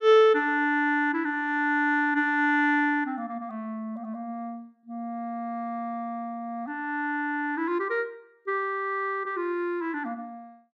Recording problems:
none

